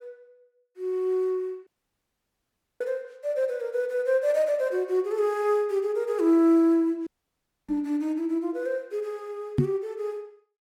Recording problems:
audio cutting out; at 1.5 s for 1 s and at 7 s for 0.5 s
knock on the microphone; at 7.5 s and at 9.5 s; peak +7 dB vs average level

